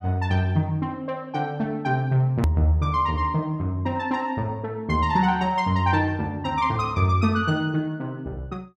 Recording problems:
hard cut with a click; at 2.5 s

